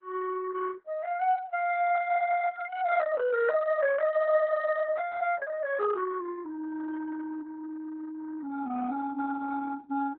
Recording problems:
lossy codec; MP3, then Opus, log-spectral distance 2 dB, nothing above 4 kHz

